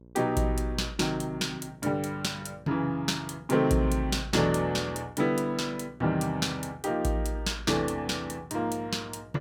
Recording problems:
electrical hum; 60 Hz, harmonics up to 660 Hz, SNR 24 dB

